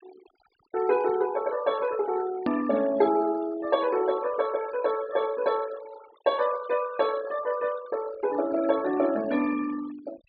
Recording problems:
low-pass filter; nothing above 4.9 kHz
noise reduction artefacts; signal-to-artefact ratio 16 dB
edit click; at 2.5 s

